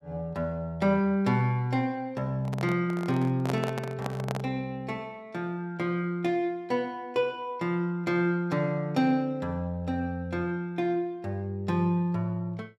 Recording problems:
microphone handling noise; from 2.5 to 4.5 s; peak 0 dB vs average level

